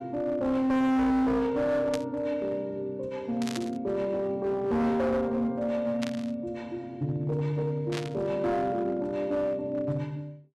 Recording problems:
distorted audio; hard clipping, uneven, signal-to-distortion ratio 6 dB
burst of static; 4 times, first at 2 s; peak -3 dB vs average level

